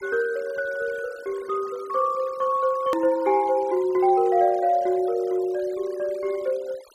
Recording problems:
noise reduction artefacts; signal-to-artefact ratio 23 dB
hard cut with a click; at 3 s

